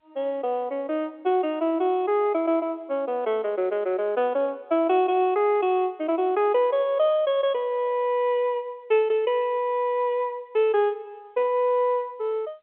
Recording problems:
phone line; 280 Hz to 3.4 kHz, G.711

